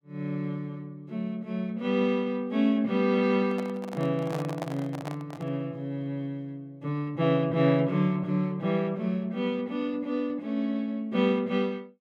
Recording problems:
microphone handling noise; from 3.5 to 5.5 s; peak -3 dB vs average level

